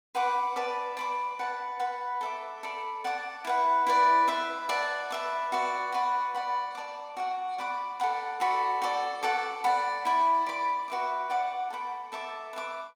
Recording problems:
none

